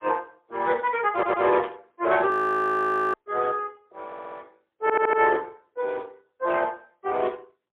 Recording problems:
phone line; 260 Hz to 3.4 kHz, AMR-NB, then MP3
stutter; at 1 s, at 4 s and at 5 s
burst of static; at 1.5 s; peak -12 dB vs average level
frozen audio; at 2.5 s for 1 s

